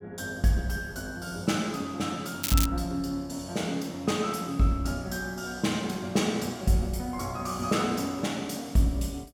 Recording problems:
crackling; at 2.5 s; loose cable, SNR 2 dB

